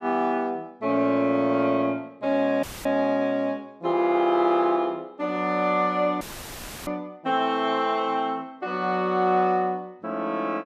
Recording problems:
dropout; at 2.5 s and at 6 s for 0.5 s; filled with static

